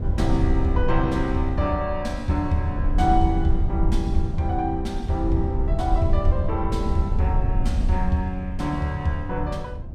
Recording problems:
low-frequency rumble; below 76 Hz, SNR 2 dB

